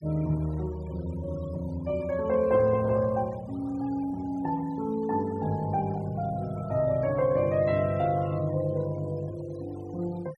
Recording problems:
noise reduction artefacts; signal-to-artefact ratio 23 dB

